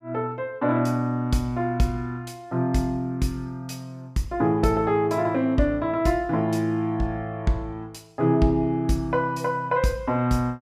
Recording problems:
none

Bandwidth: 15.5 kHz